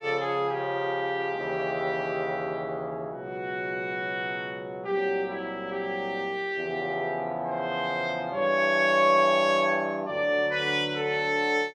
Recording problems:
none

